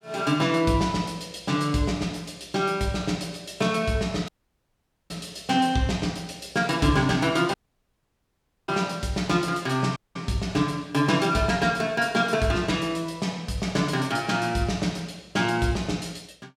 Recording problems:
dropout; at 4.5 s for 1 s, at 7.5 s for 1 s and at 10 s

